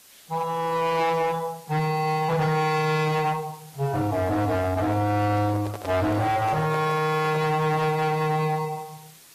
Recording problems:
lossy codec; AAC, log-spectral distance 5 dB, nothing above 15.6 kHz
distortion; hard clipping, signal-to-distortion ratio 10 dB
hiss; slope 0 dB per octave, SNR 23 dB
microphone handling noise; from 5 to 7.5 s; peak -8 dB vs average level

